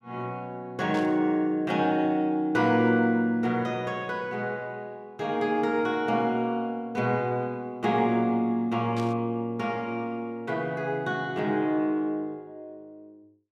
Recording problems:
burst of static; at 1 s and at 9 s; peak -10 dB vs average level

